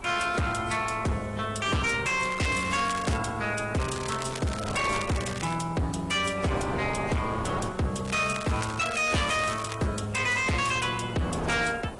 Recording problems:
lossy codec; AAC, log-spectral distance 7 dB, nothing above 10.4 kHz
distorted audio; hard clipping, signal-to-distortion ratio 7 dB
hiss; SNR 27 dB
wind on the microphone; below 1 kHz, SNR 12 dB
crackle; at 2.5 s, from 4 to 5.5 s and from 8 to 10 s; loose cable, SNR 12 dB

